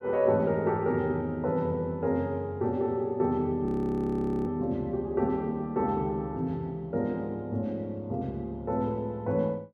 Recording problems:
audio freezing; at 3.5 s for 1 s

